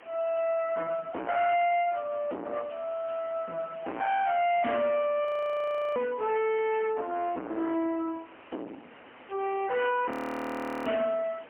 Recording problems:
phone line; 240 Hz to 3.1 kHz, AMR-NB, then MP3
distorted audio; soft clipping, signal-to-distortion ratio 3 dB
hiss; SNR 23 dB
audio freezing; at 5.5 s for 0.5 s and at 10 s for 1 s

